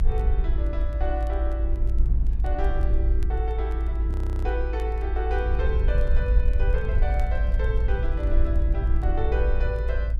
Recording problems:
low-frequency rumble; below 56 Hz, SNR -7 dB
crackling; vinyl, SNR 28 dB
frozen audio; at 4 s
handling noise; from 6 to 8.5 s; peak -10 dB vs average level

